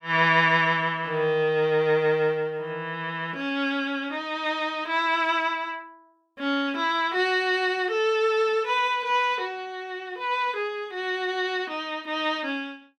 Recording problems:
none

